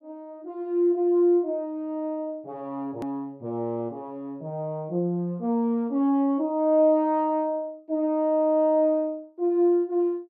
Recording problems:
edit click; at 3 s

